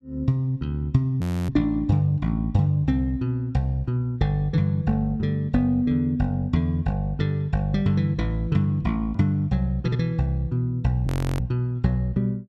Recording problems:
audio freezing; at 1 s and at 11 s

